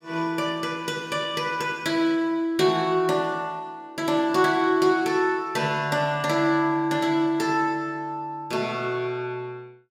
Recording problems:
none

